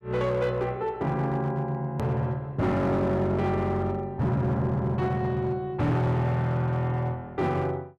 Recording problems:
distortion; hard clipping, uneven, signal-to-distortion ratio 10 dB
click at an edit; at 2 s

